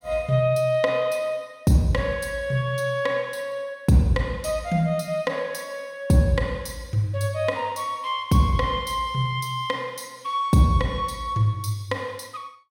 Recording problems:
none

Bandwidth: 16.5 kHz